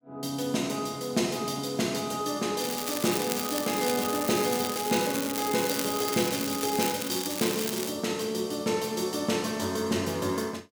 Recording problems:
crackle; from 2.5 to 8 s; loose cable, SNR 4 dB

